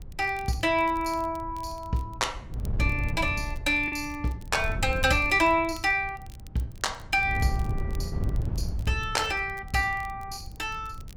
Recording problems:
wind noise; below 120 Hz, SNR 9 dB
crackling; vinyl, SNR 28 dB
packet loss; 0.9% of the sound replaced, filled with the last packet

